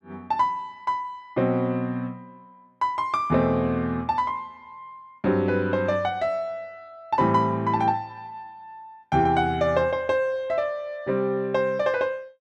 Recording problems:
none

